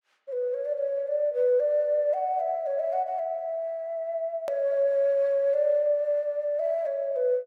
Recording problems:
hard cut with a click; at 4.5 s

